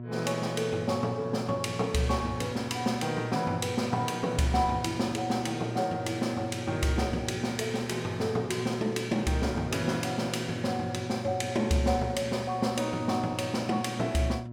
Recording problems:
hum; 60 Hz, harmonics up to 960 Hz, SNR 10 dB

